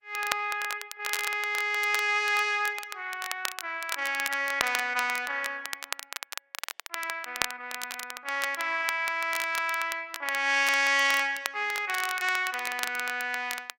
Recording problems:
codec artefacts; Opus, log-spectral distance 2 dB
crackling; vinyl, SNR 9 dB

